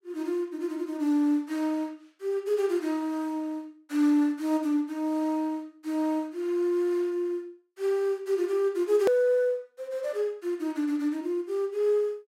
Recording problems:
hard cut with a click; at 9 s

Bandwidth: 16 kHz